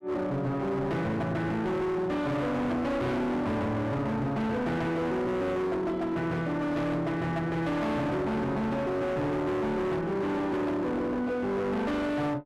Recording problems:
distortion; hard clipping, signal-to-distortion ratio 7 dB

